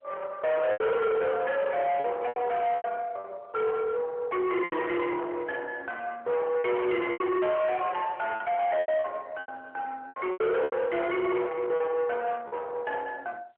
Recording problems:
telephone audio; 300 Hz to 3.3 kHz, AMR-NB
distorted audio; soft clipping, signal-to-distortion ratio 6 dB
packet loss; 8% of the sound replaced, filled with repeated pitch periods

